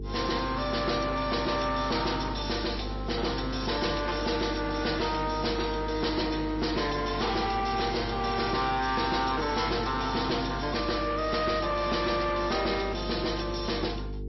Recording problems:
lossy codec; MP3, then MP3, log-spectral distance 10 dB, nothing above 5.7 kHz
distortion; soft clipping, signal-to-distortion ratio 11 dB
mains hum; 50 Hz, harmonics up to 450 Hz, SNR 9 dB

